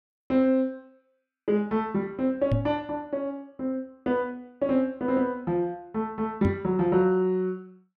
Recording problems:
microphone bump; at 2.5 s and at 6.5 s; peak +5 dB vs average level

